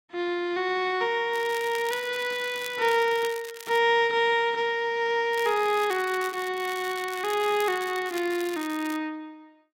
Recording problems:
crackling; from 1.5 to 4 s and from 5.5 to 9 s; loose cable, SNR 16 dB

